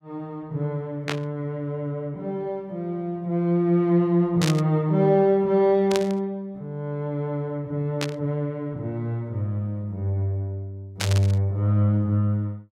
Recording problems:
burst of static; 5 times, first at 1 s; peak +1 dB vs average level

